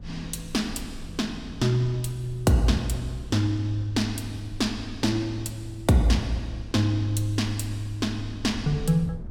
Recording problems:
wind noise; below 100 Hz, SNR 16 dB

